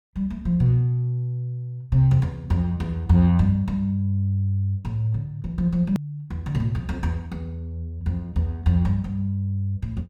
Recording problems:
edit click; at 6 s

